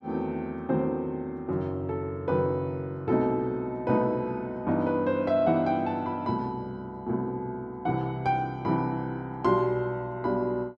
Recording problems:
none

